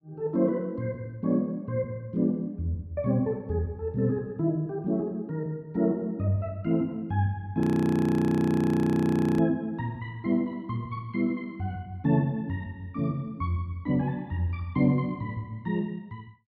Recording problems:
frozen audio; at 7.5 s for 2 s

